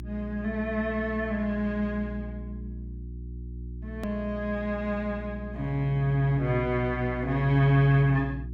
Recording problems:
electrical hum; 60 Hz, harmonics up to 360 Hz, SNR 12 dB
click at an edit; at 4 s

